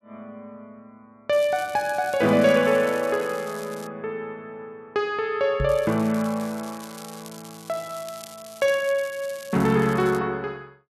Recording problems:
crackle; from 1.5 to 4 s and from 5.5 to 10 s; loose cable, SNR 20 dB
knock on the microphone; at 5.5 s; peak 0 dB vs average level

